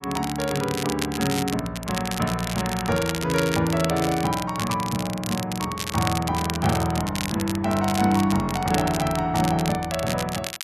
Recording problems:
crackle; vinyl, SNR 8 dB

